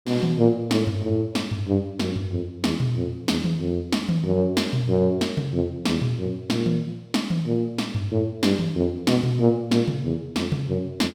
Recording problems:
none

